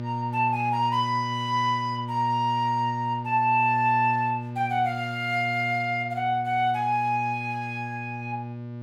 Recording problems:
hum; 60 Hz, harmonics up to 1.2 kHz, SNR 9 dB

